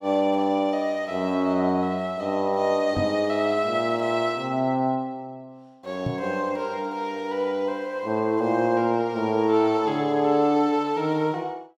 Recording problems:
microphone thump; at 3 s and at 6 s; peak -1 dB vs average level

